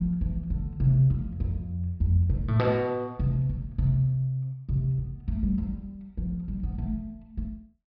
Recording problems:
treble cut off; nothing above 5.5 kHz

